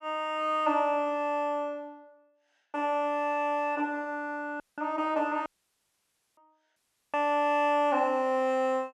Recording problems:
audio cutting out; at 4.5 s, at 5.5 s for 1 s and at 7 s

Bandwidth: 12.5 kHz